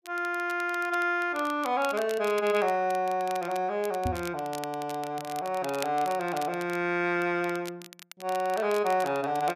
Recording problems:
crackle; vinyl, SNR 17 dB
knock on the microphone; at 4 s; peak 0 dB vs average level

